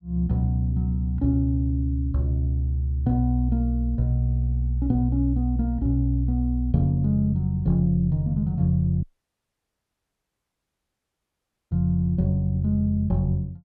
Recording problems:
dropout; at 9 s for 2.5 s

